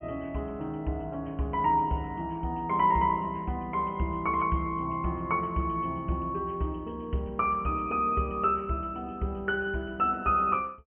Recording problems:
treble missing; nothing above 3.1 kHz

